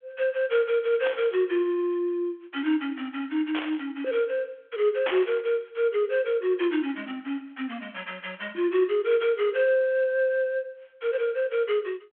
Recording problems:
phone line; 260 Hz to 3.4 kHz, G.726
burst of static; at 1 s, at 3.5 s and at 5 s; peak 0 dB vs average level

